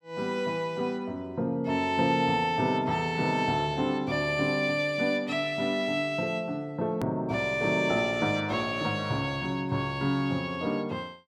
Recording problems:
edit click; at 7 s

